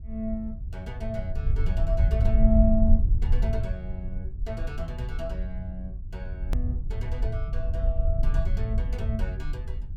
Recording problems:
low-frequency rumble; below 70 Hz, SNR -5 dB
edit click; at 6.5 s

